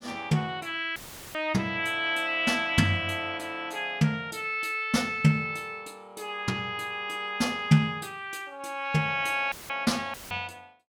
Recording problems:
audio cutting out; at 1 s, at 9.5 s and at 10 s; filled with static

